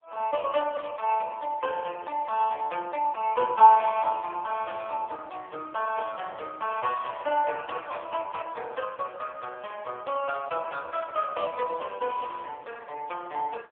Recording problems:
phone line; 300 Hz to 3.3 kHz, AMR-NB
static burst; at 10 s; peak -19 dB vs average level

